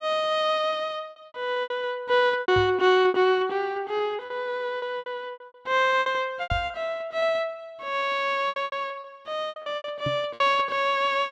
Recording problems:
packet loss; 13% of the sound replaced, filled with repeated pitch periods
knock on the microphone; at 2.5 s, at 6.5 s and at 10 s; peak -1 dB vs average level

